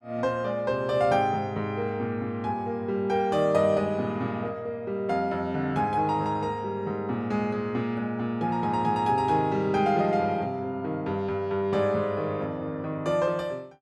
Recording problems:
none

